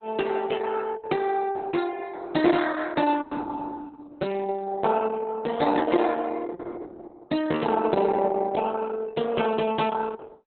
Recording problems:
lossy compression; Opus, log-spectral distance 4 dB, nothing above 4.1 kHz

